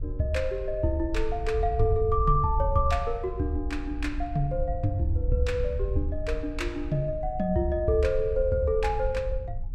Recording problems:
wind noise; below 66 Hz, SNR 6 dB

